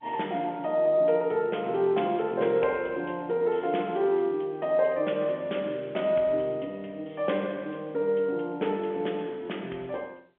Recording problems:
phone line; 260 Hz to 3.4 kHz, G.711

